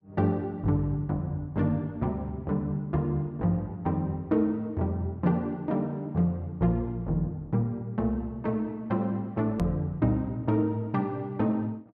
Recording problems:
hard cut with a click; at 9.5 s

